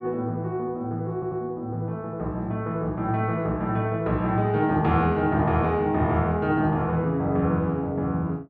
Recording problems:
stutter; at 1 s

